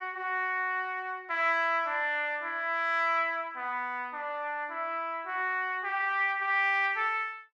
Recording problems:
none

